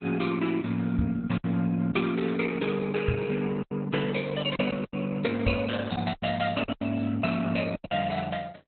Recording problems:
lossy codec; Opus, log-spectral distance 4 dB, nothing above 4 kHz
lost packets; 7% of the sound replaced, filled with silence
knock on the microphone; at 1 s, at 3 s and at 5.5 s; peak +5 dB vs average level

